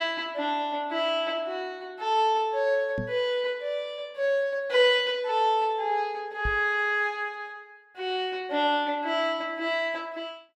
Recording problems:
microphone bump; at 3 s and at 6.5 s; peak -2 dB vs average level

